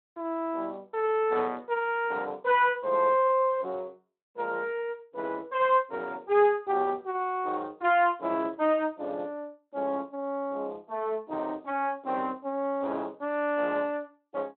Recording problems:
phone line; 220 Hz to 3.4 kHz, Speex

